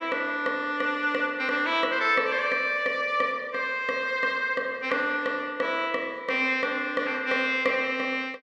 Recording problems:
none

